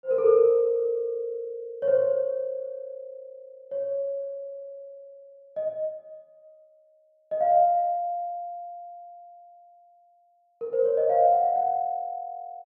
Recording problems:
none

